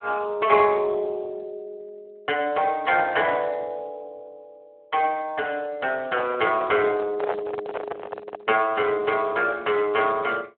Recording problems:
telephone audio; 300 Hz to 3.2 kHz, Speex
microphone handling noise; from 6 to 8.5 s; peak 0 dB vs average level

